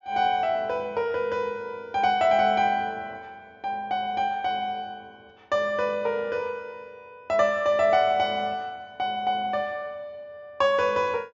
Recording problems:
treble cut off; nothing above 7.4 kHz

